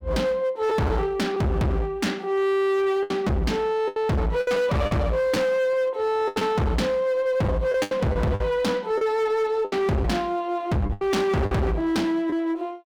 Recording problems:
distorted audio; hard clipping, uneven, signal-to-distortion ratio 6 dB
packet loss; 7% of the sound replaced, filled with the last packet

